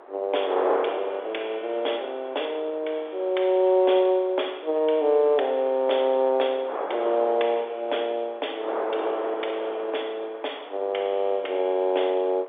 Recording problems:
phone line; 320 Hz to 3.6 kHz, G.711
wind noise; below 1 kHz, SNR 11 dB

